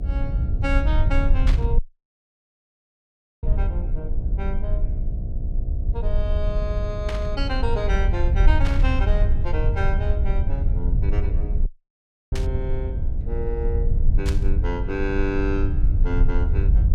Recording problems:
electrical hum; 60 Hz, harmonics up to 720 Hz, SNR 8 dB
low-frequency rumble; below 68 Hz, SNR -6 dB
burst of static; 5 times, first at 1.5 s; peak +2 dB vs average level
dropout; at 2 s for 1.5 s and at 12 s for 0.5 s

